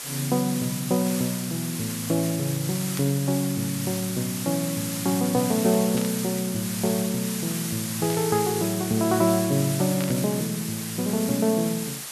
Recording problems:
hiss; slope +1 dB per octave, SNR 6 dB
static burst; 4 times, first at 3 s; peak -7 dB vs average level

